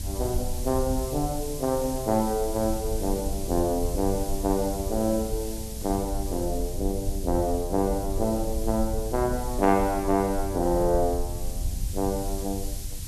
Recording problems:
background hiss; SNR 12 dB
low-frequency rumble; below 74 Hz, SNR 7 dB

